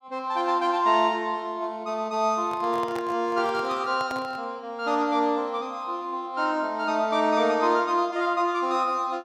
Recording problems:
handling noise; from 2.5 to 4.5 s; peak -7 dB vs average level

